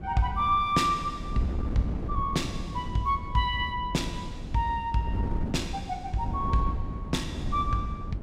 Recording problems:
wind noise; below 200 Hz, SNR 6 dB

